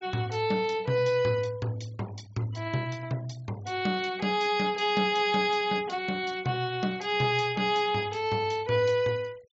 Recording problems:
treble missing; nothing above 7.2 kHz
denoising artefacts; signal-to-artefact ratio 24 dB

